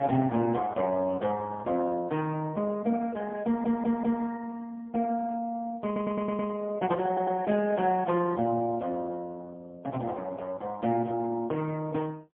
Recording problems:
phone line; 150 Hz to 3.3 kHz, AMR-NB, then MP3
audio stuttering; at 3.5 s, at 6 s and at 7 s

